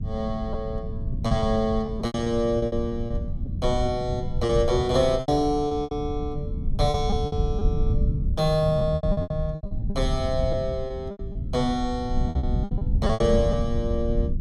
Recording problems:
rumble; below 120 Hz, SNR 3 dB
packet loss; 13% of the sound replaced, filled with repeated pitch periods

